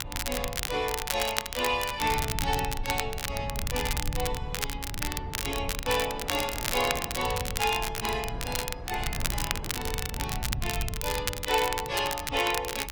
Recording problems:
codec artefacts; Opus, log-spectral distance 3 dB, nothing above 18.9 kHz
rumble; below 110 Hz, SNR 8 dB
wind noise; below 720 Hz, SNR 15 dB
crackle; vinyl, SNR 2 dB

